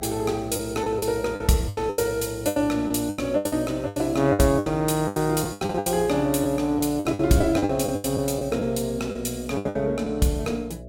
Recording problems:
mains hum; 60 Hz, harmonics up to 660 Hz, SNR 16 dB
packet loss; 15% of the sound replaced, filled with the last packet

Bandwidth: 16.5 kHz